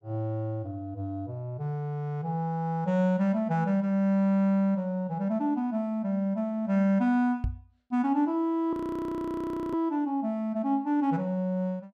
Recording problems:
knock on the microphone; at 7.5 s; peak +1 dB vs average level
audio freezing; at 8.5 s for 1 s

